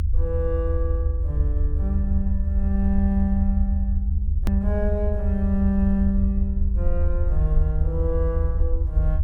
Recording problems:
low-frequency rumble; below 76 Hz, SNR -4 dB
hard cut with a click; at 4.5 s

